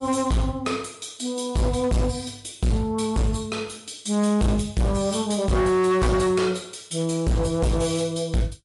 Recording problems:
lossy compression; MP3, log-spectral distance 4 dB, nothing above 11 kHz
distorted audio; hard clipping, uneven, signal-to-distortion ratio 7 dB

